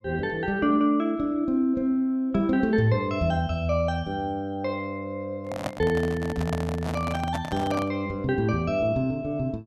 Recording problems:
microphone handling noise; from 5.5 to 8 s; peak 0 dB vs average level

